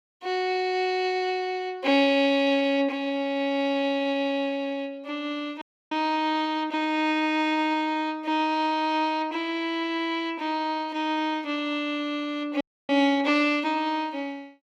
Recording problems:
audio freezing; at 5.5 s and at 13 s

